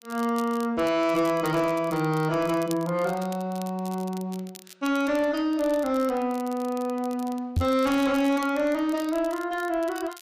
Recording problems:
distorted audio; soft clipping, signal-to-distortion ratio 10 dB
crackling; vinyl, SNR 20 dB
microphone bump; at 7.5 s; peak +4 dB vs average level

